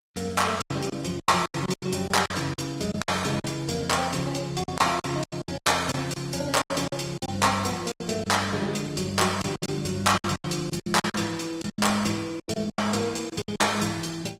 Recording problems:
codec artefacts; Opus, log-spectral distance 5 dB, nothing above 18.9 kHz
packet loss; 14% of the sound replaced, filled with silence

